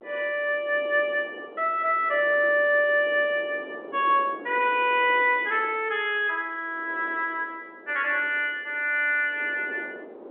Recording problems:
phone line; 300 Hz to 3.6 kHz, G.711
wind on the microphone; below 610 Hz, SNR 19 dB

